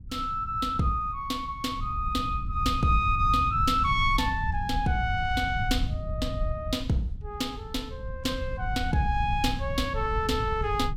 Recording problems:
wind on the microphone; below 100 Hz, SNR 6 dB

